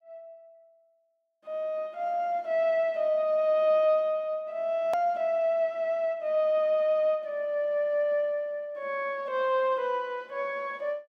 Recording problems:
edit click; at 5 s

